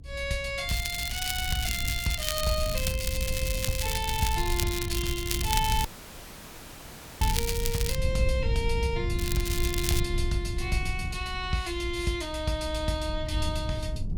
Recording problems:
rumble; below 94 Hz, SNR 3 dB
crackling; from 0.5 to 8 s and at 9 s; loose cable, SNR 2 dB
dropout; at 6 s for 1.5 s

